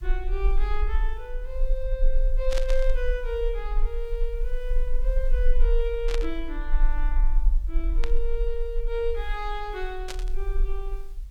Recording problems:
hiss; slope -1 dB per octave, SNR 28 dB
low-frequency rumble; below 36 Hz, strongest tone 18 Hz, SNR -4 dB
static burst; 4 times, first at 2.5 s; peak +3 dB vs average level

